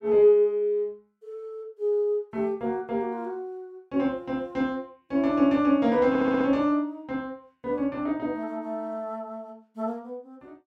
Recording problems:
audio stuttering; at 6 s

